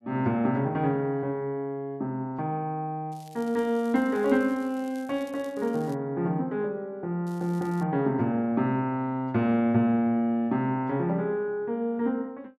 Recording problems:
crackling; from 3 to 6 s and at 7.5 s; loose cable, SNR 27 dB

